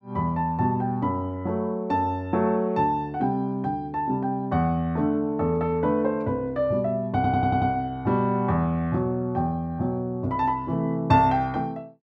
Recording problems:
audio stuttering; at 7 s

